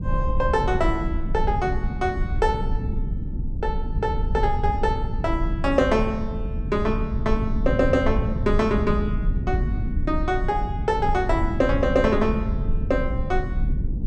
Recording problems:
low-frequency rumble; below 100 Hz, SNR 3 dB

